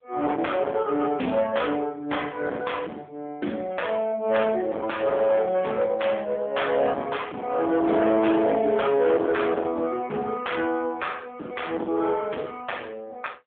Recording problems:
telephone audio; 220 Hz to 3.5 kHz, AMR-NB
distortion; hard clipping, signal-to-distortion ratio 9 dB

